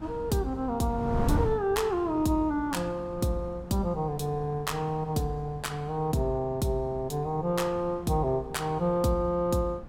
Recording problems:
wind noise; below 210 Hz, SNR 11 dB

